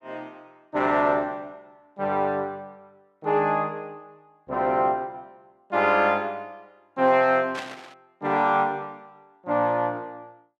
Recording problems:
static burst; at 7.5 s; peak -6 dB vs average level

